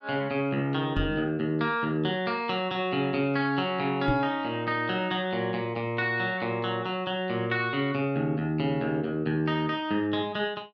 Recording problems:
microphone bump; at 1 s and at 4 s; peak +3 dB vs average level

